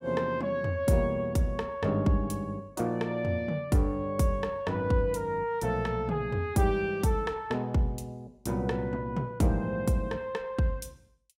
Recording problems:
none

